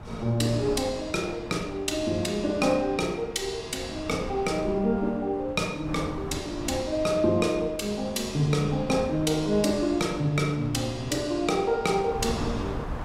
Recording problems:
wind noise; below 610 Hz, SNR 13 dB

